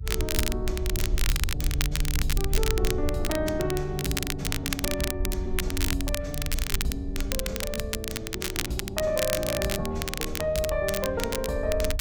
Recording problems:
rumble; below 66 Hz, SNR 4 dB
crackling; vinyl, SNR 1 dB

